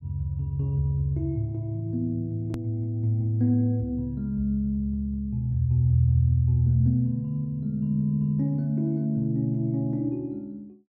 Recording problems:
click at an edit; at 2.5 s

